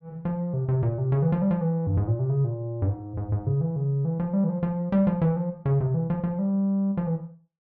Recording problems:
none

